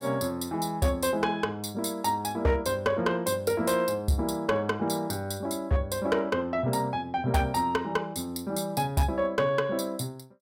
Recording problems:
distortion; hard clipping, signal-to-distortion ratio 12 dB

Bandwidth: 16 kHz